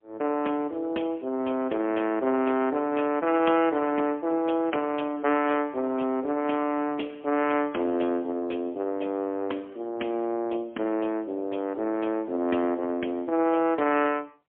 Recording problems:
phone line; 220 Hz to 3.3 kHz, AMR-NB, then MP3

